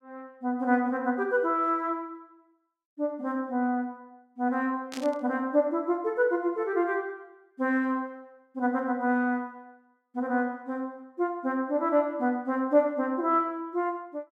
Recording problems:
static burst; at 5 s; peak -8 dB vs average level

